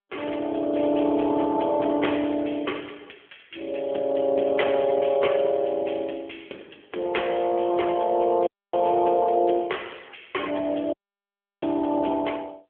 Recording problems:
telephone audio; 240 Hz to 3.3 kHz, AMR-NB
audio cutting out; at 8.5 s and at 11 s for 0.5 s

